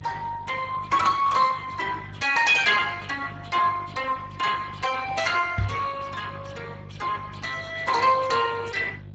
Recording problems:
codec artefacts; Speex, log-spectral distance 5 dB, nothing above 7.3 kHz
hum; 50 Hz, harmonics up to 400 Hz, SNR 17 dB
microphone bump; at 5.5 s; peak +1 dB vs average level

